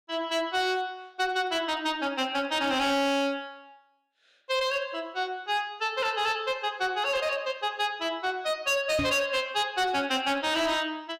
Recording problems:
distorted audio; hard clipping, signal-to-distortion ratio 11 dB
knock on the microphone; at 9 s; peak +1 dB vs average level

